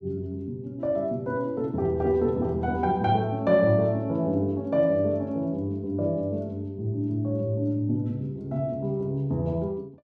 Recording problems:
none

